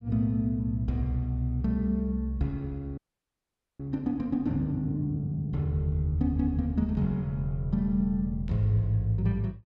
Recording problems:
frozen audio; at 3 s for 1 s

